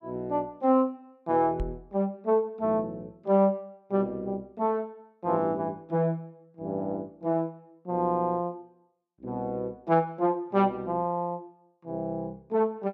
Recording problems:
microphone bump; at 1.5 s; peak -1 dB vs average level

